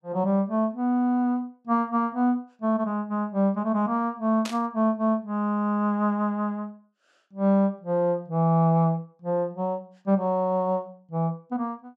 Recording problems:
static burst; at 4.5 s; peak -5 dB vs average level

